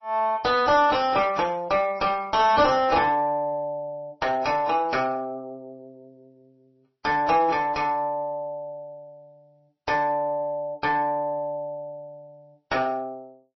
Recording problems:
lossy codec; AAC, then MP3, log-spectral distance 2 dB, nothing above 5.7 kHz
distortion; soft clipping, signal-to-distortion ratio 10 dB

